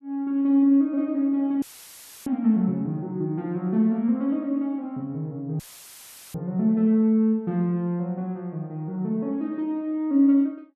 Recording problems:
dropout; at 1.5 s for 0.5 s and at 5.5 s for 0.5 s; filled with static

